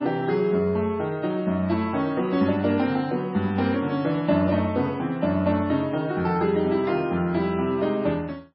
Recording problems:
codec artefacts; MP3, log-spectral distance 2 dB, nothing above 4.6 kHz

